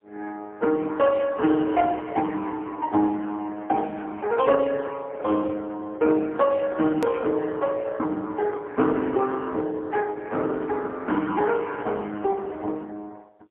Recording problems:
phone line; 240 Hz to 3.4 kHz, AMR-NB, then MP3
edit click; at 7 s

